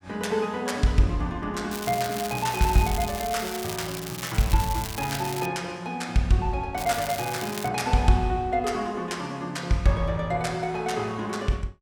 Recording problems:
crackling; from 1.5 to 5.5 s and at 7 s; loose cable, SNR 9 dB

